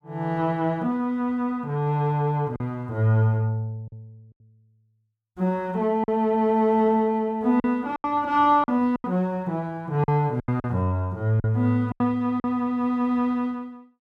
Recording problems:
lost packets; 5% of the sound replaced, filled with silence

